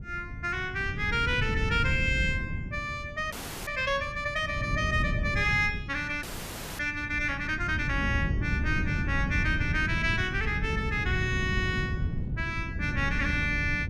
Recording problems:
wind noise; below 170 Hz, SNR 4 dB
frozen audio; at 3.5 s and at 6 s for 0.5 s

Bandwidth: 14.5 kHz